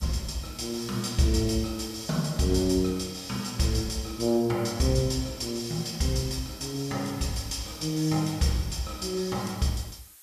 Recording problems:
hiss; slope +3 dB per octave, SNR 21 dB

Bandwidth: 14.5 kHz